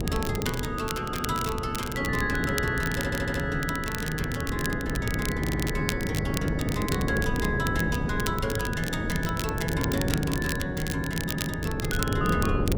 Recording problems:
wind noise; below 320 Hz, SNR 1 dB
crackling; vinyl, SNR 7 dB
audio stuttering; at 3 s, at 5.5 s and at 11 s

